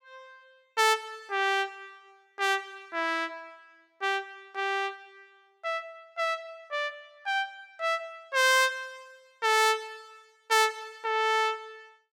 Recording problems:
none

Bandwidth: 17 kHz